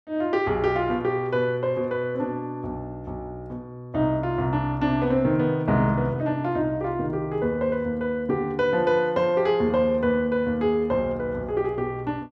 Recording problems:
none

